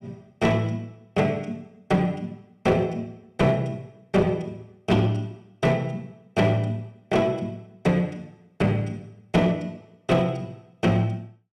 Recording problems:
distorted audio; hard clipping, uneven, signal-to-distortion ratio 11 dB

